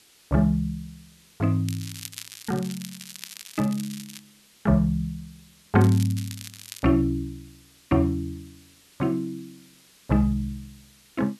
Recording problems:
background hiss; SNR 28 dB
crackling; from 1.5 to 4 s and from 6 to 7 s; loose cable, SNR 14 dB

